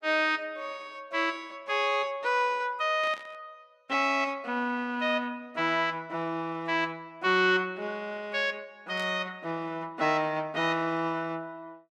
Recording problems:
burst of static; at 3 s and at 9 s; peak -11 dB vs average level

